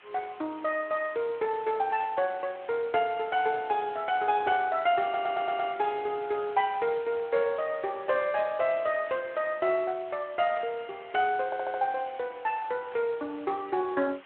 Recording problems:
telephone audio; 260 Hz to 3.3 kHz, Speex
hiss; SNR 23 dB
static burst; 5 times, first at 2 s; peak -17 dB vs average level
audio stuttering; at 5 s and at 11 s

